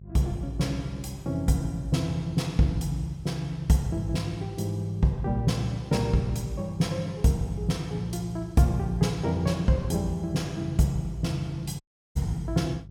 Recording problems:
hum; 50 Hz, harmonics up to 400 Hz, SNR 18 dB
audio cutting out; at 12 s

